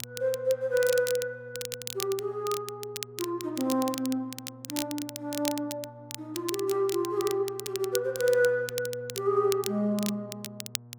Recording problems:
electrical hum; 60 Hz, harmonics up to 960 Hz, SNR 20 dB
crackle; vinyl, SNR 9 dB

